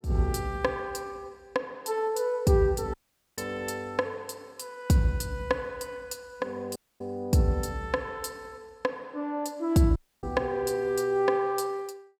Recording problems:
audio cutting out; at 3 s, at 7 s and at 10 s

